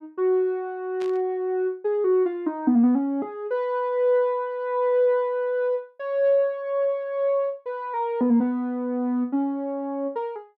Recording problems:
static burst; at 1 s; peak -14 dB vs average level

